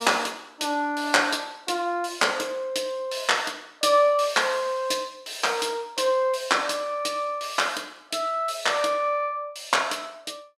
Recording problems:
none

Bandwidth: 14.5 kHz